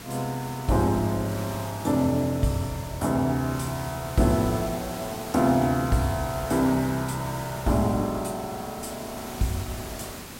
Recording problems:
hiss; slope -3 dB per octave, SNR 12 dB

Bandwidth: 16 kHz